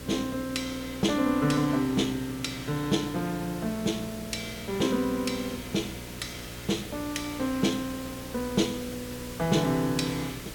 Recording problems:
hum; 60 Hz, harmonics up to 600 Hz, SNR 14 dB
background hiss; SNR 13 dB

